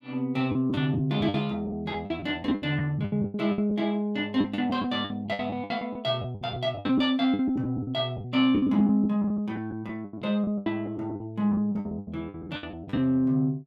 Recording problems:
lost packets; 17% of the sound replaced, filled with the last packet

